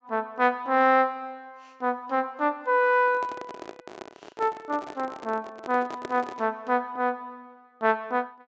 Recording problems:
treble cut off; nothing above 8 kHz
handling noise; from 3 to 6.5 s; peak -5 dB vs average level

